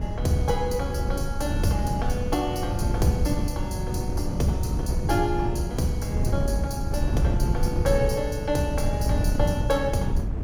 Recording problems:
wind on the microphone; below 150 Hz, SNR 0 dB

